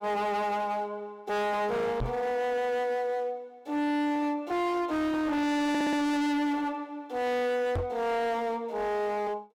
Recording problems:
distortion; hard clipping, signal-to-distortion ratio 6 dB
microphone bump; at 2 s and at 8 s; peak +2 dB vs average level
audio stuttering; at 5.5 s

